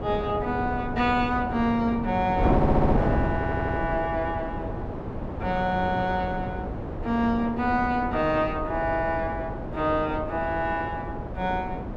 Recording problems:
wind noise; below 510 Hz, SNR 4 dB
audio stuttering; at 2.5 s and at 3.5 s

